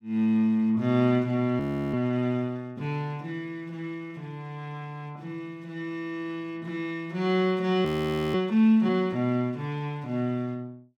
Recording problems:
audio freezing; at 1.5 s and at 8 s

